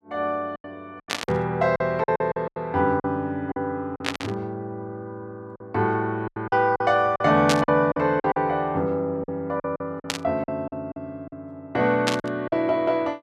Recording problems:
packet loss; 11% of the sound replaced, filled with silence
burst of static; 5 times, first at 1 s; peak +4 dB vs average level

